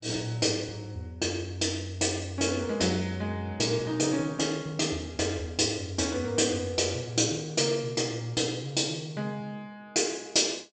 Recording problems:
low-pass filter; nothing above 8 kHz

